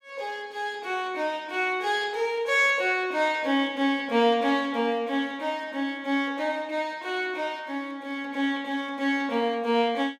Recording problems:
none

